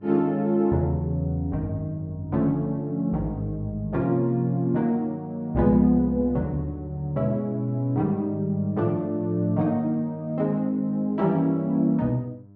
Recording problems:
electrical hum; 50 Hz, harmonics up to 700 Hz, SNR 25 dB

